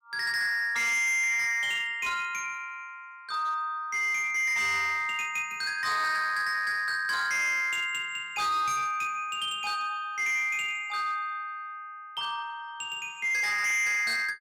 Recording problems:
distortion; hard clipping, signal-to-distortion ratio 10 dB

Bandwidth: 16 kHz